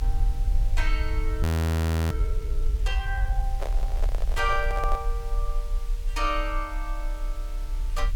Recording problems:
hiss; slope 0 dB per octave, SNR 17 dB
low-frequency rumble; below 76 Hz, SNR -4 dB
audio freezing; at 1.5 s for 0.5 s
microphone handling noise; from 3.5 to 5 s; peak +1 dB vs average level

